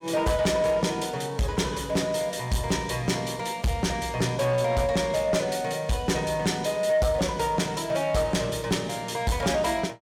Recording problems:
distorted audio; soft clipping, signal-to-distortion ratio 11 dB

